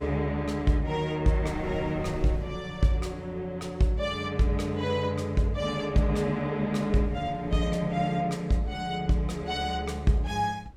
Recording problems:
wind noise; below 150 Hz, SNR 18 dB

